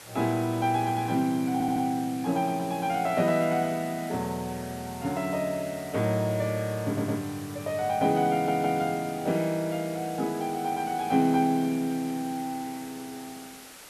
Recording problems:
background hiss; slope -2 dB per octave, SNR 17 dB
audio stuttering; at 1.5 s, at 7 s and at 8.5 s

